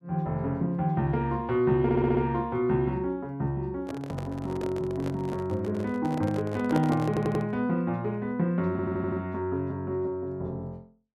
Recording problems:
audio stuttering; at 2 s, at 7 s and at 8.5 s
handling noise; from 4 to 7.5 s; peak 0 dB vs average level

